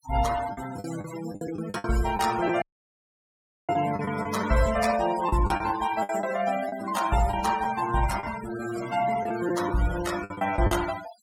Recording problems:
noise reduction artefacts; signal-to-artefact ratio 10 dB
lost packets; 9% of the sound replaced, filled with the last packet
audio cutting out; at 2.5 s for 1 s

